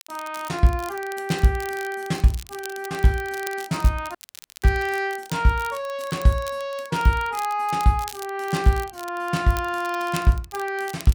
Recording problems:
crackling; vinyl, SNR 17 dB
audio cutting out; at 4 s

